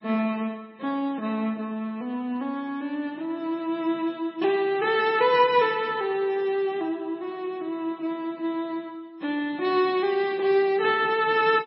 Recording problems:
lossy codec; MP3, log-spectral distance 2 dB, nothing above 5.3 kHz

